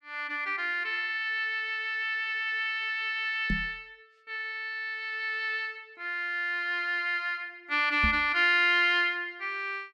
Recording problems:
microphone bump; at 3.5 s and at 8 s; peak 0 dB vs average level

